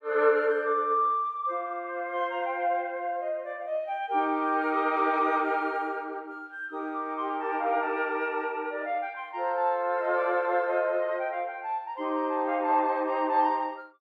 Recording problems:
none

